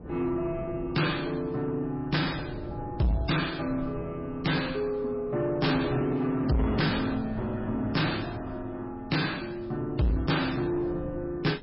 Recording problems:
lossy compression; MP3, log-spectral distance 3 dB, nothing above 5.3 kHz
distortion; soft clipping, signal-to-distortion ratio 7 dB
wind on the microphone; below 300 Hz, SNR 14 dB

